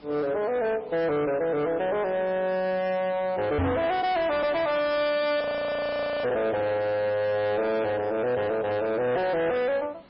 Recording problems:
codec artefacts; MP3, log-spectral distance 3 dB, nothing above 4.8 kHz
distortion; hard clipping, signal-to-distortion ratio 6 dB
background hiss; SNR 26 dB
microphone thump; at 3.5 s; peak +4 dB vs average level
audio freezing; at 5.5 s for 1 s

